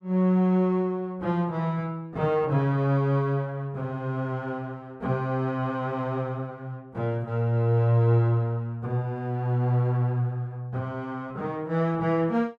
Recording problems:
none

